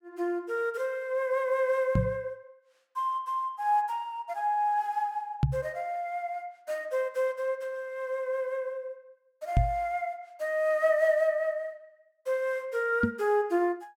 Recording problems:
knock on the microphone; 4 times, first at 2 s; peak +9 dB vs average level

